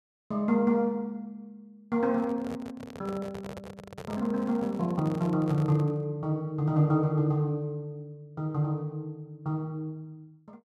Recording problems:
handling noise; from 2 to 6 s; peak -6 dB vs average level

